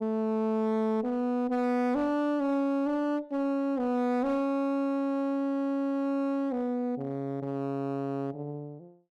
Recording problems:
distorted audio; hard clipping, uneven, signal-to-distortion ratio 11 dB

